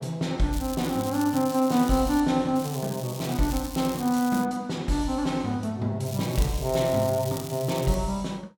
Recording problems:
crackling; from 0.5 to 2 s, from 2.5 to 4.5 s and from 6 to 8 s; loose cable, SNR 13 dB

